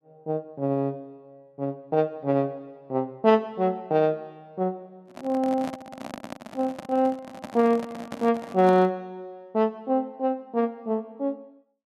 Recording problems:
handling noise; from 5 to 9 s; peak -5 dB vs average level

